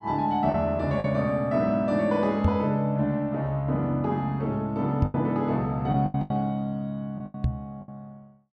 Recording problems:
lost packets; 6% of the sound replaced, filled with the last packet
microphone bump; at 2.5 s, at 5 s and at 7.5 s; peak +6 dB vs average level

